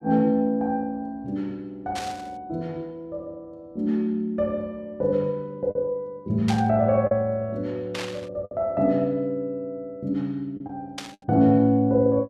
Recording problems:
lost packets; 2% of the sound replaced, filled with the last packet
static burst; 4 times, first at 2 s; peak -3 dB vs average level

